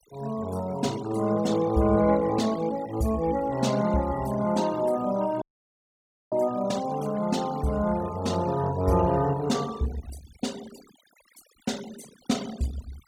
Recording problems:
denoising artefacts; signal-to-artefact ratio 18 dB
audio cutting out; at 5.5 s for 1 s

